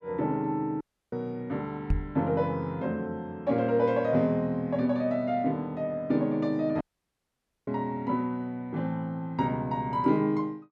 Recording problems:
audio cutting out; at 1 s and at 7 s for 1 s
microphone thump; at 2 s; peak +4 dB vs average level

